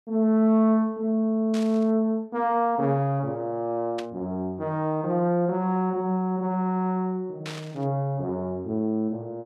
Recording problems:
burst of static; at 1.5 s, at 4 s and at 7.5 s; peak -8 dB vs average level

